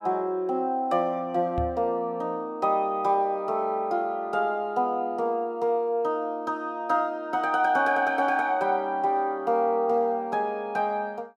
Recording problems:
microphone thump; at 1.5 s; peak -3 dB vs average level

